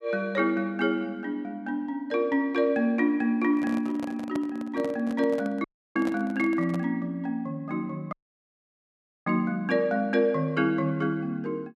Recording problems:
microphone handling noise; from 3.5 to 7 s; peak -4 dB vs average level
dropout; at 5.5 s and at 8 s for 1 s

